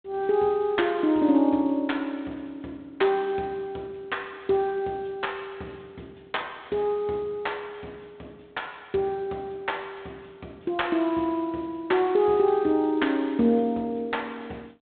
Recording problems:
telephone audio; 170 Hz to 3.8 kHz, G.726

